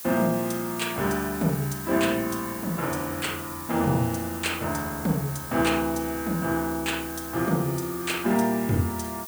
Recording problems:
hiss; slope +1 dB per octave, SNR 10 dB

